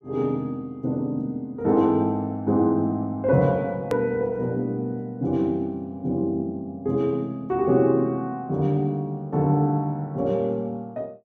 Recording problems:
hard cut with a click; at 4 s

